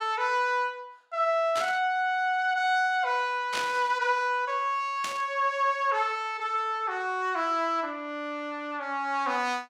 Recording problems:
static burst; at 1.5 s, at 3.5 s and at 5 s; peak -1 dB vs average level

